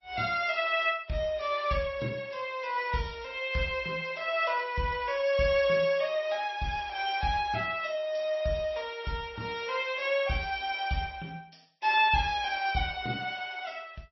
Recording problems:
lossy codec; MP3, log-spectral distance 3 dB, nothing above 5.7 kHz

